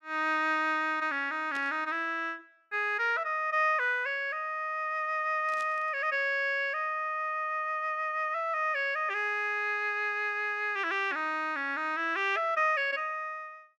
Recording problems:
burst of static; at 1.5 s and at 5.5 s; peak -11 dB vs average level

